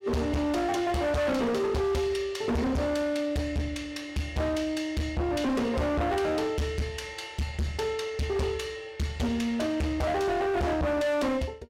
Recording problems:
distortion; hard clipping, signal-to-distortion ratio 6 dB

